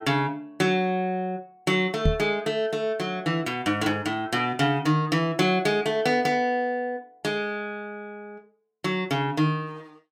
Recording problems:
knock on the microphone; at 2 s; peak +5 dB vs average level

